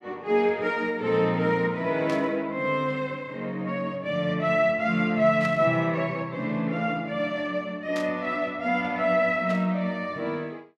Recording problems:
burst of static; 4 times, first at 2 s; peak -9 dB vs average level

